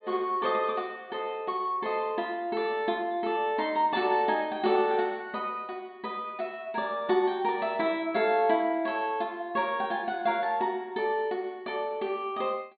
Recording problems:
treble cut off; nothing above 4.5 kHz

